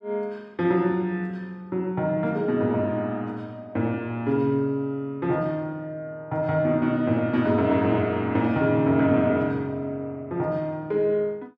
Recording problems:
none

